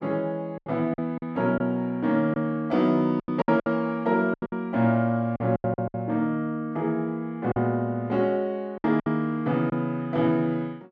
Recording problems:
lost packets; 9% of the sound replaced, filled with silence

